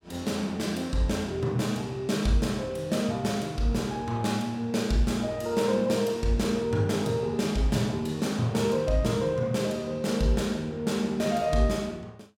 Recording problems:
none

